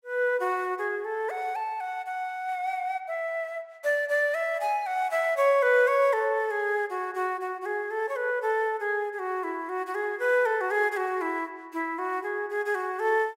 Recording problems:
none

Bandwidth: 16 kHz